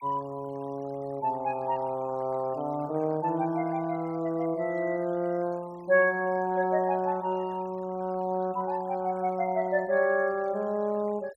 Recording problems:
denoising artefacts; signal-to-artefact ratio 25 dB

